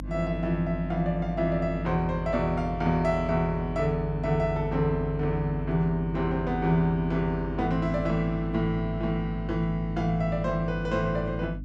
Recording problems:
electrical hum; 50 Hz, harmonics up to 300 Hz, SNR 9 dB

